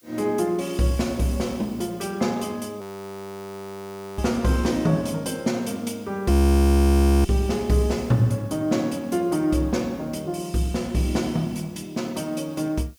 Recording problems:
hiss; slope +4 dB per octave, SNR 30 dB
audio freezing; at 3 s for 1.5 s and at 6.5 s for 1 s

